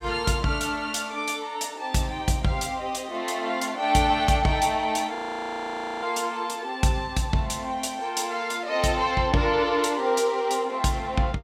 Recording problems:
frozen audio; at 5 s for 1 s

